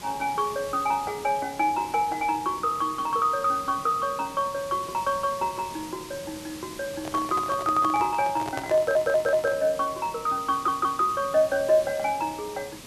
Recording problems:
hiss; slope -2 dB per octave, SNR 15 dB
microphone handling noise; from 7 to 9.5 s; peak -3 dB vs average level
audio stuttering; at 9 s and at 11 s

